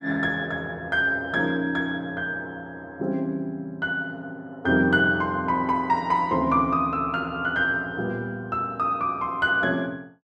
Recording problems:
none

